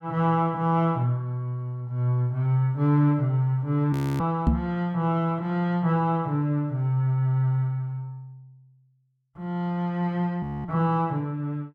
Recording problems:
audio freezing; at 4 s and at 10 s
microphone bump; at 4.5 s; peak +7 dB vs average level

